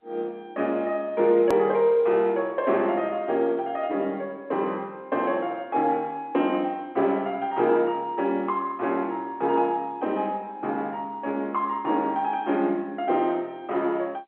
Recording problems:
telephone audio; 240 Hz to 3.8 kHz, G.711
edit click; at 1.5 s

